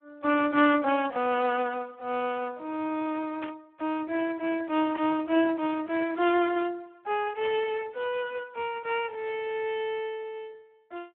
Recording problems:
telephone audio; 260 Hz to 3.4 kHz, Speex
burst of static; at 3.5 s, at 5 s and at 7.5 s; peak -7 dB vs average level

